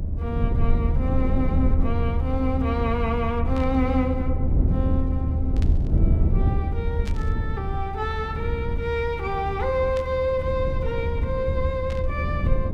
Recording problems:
low-frequency rumble; below 98 Hz, SNR -2 dB
burst of static; 5 times, first at 3.5 s; peak -8 dB vs average level

